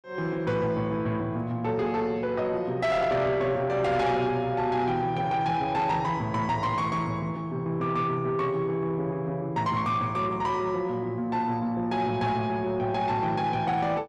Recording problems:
distortion; soft clipping, signal-to-distortion ratio 12 dB

